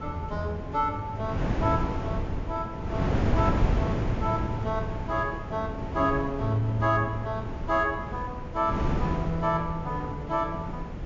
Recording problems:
treble cut off; nothing above 7.2 kHz
wind on the microphone; below 320 Hz, SNR 2 dB

